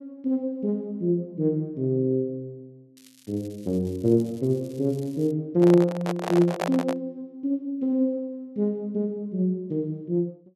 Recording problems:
crackling; from 3 to 5.5 s; loose cable, SNR 27 dB
microphone handling noise; from 5.5 to 7 s; peak +2 dB vs average level

